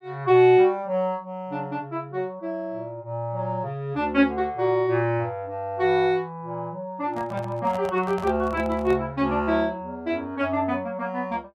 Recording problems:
microphone handling noise; from 7 to 9 s; peak -8 dB vs average level

